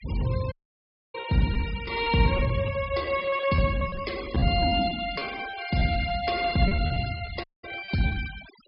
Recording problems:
low-pass filter; nothing above 5.5 kHz
denoising artefacts; signal-to-artefact ratio 16 dB
lost packets; 12% of the sound replaced, filled with repeated pitch periods
dropout; at 0.5 s for 0.5 s and at 7.5 s

